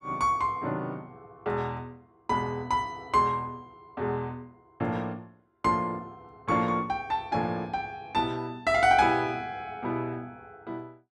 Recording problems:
none

